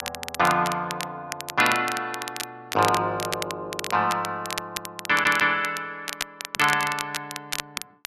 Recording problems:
crackling; vinyl, SNR 9 dB
audio stuttering; at 5 s

